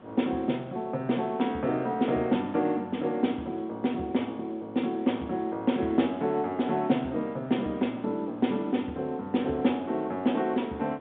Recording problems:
phone line; 170 Hz to 3.7 kHz, G.711
wind on the microphone; below 700 Hz, SNR 23 dB

